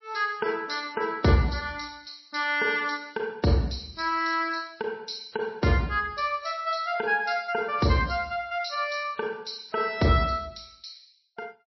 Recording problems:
lossy codec; MP3, log-spectral distance 6 dB, nothing above 5.7 kHz

